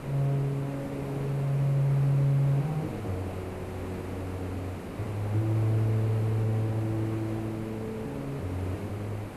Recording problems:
hiss; slope -8 dB per octave, SNR 9 dB

